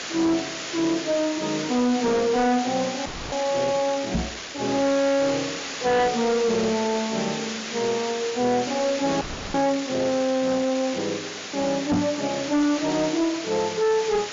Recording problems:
low-pass filter; nothing above 7.2 kHz
distorted audio; hard clipping, signal-to-distortion ratio 10 dB
hiss; slope -1 dB per octave, SNR 8 dB
audio freezing; at 3 s and at 9 s
microphone thump; at 4 s and at 12 s; peak +4 dB vs average level

